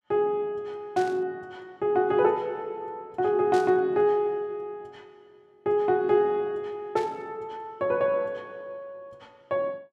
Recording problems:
static burst; at 1 s, at 3.5 s and at 7 s; peak -10 dB vs average level

